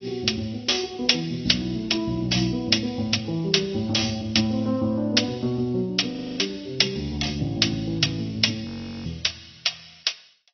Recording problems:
low-pass filter; nothing above 5.8 kHz
codec artefacts; AAC, log-spectral distance 7 dB
frozen audio; at 6 s and at 8.5 s

